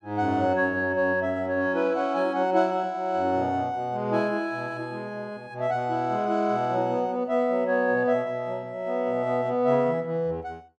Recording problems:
none

